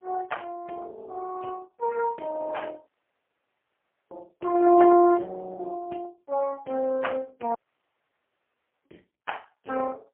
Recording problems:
telephone audio; 280 Hz to 3.2 kHz, AMR-NB, then MP3
dropout; at 3 s for 1 s and at 7.5 s for 1.5 s

